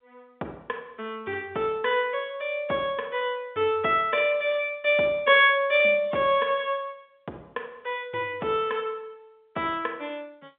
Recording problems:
telephone audio; 300 Hz to 3.6 kHz, G.711

